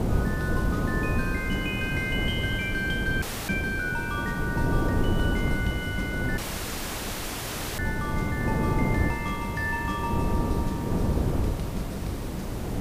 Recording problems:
background hiss; slope -5 dB per octave, SNR 9 dB
wind noise; below 310 Hz, SNR -2 dB
dropout; at 3 s and at 6.5 s for 1.5 s

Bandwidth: 15 kHz